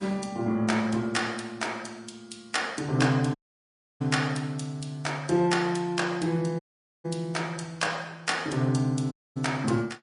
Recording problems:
codec artefacts; MP3, log-spectral distance 3 dB, nothing above 10.4 kHz
dropout; at 3.5 s for 0.5 s, at 6.5 s and at 9 s

